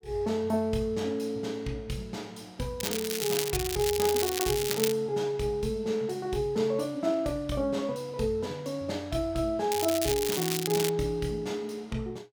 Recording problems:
crackling; from 3 to 5 s and from 9.5 to 11 s; loose cable, SNR 2 dB

